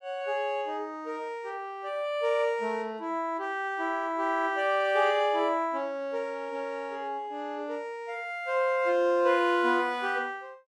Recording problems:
none

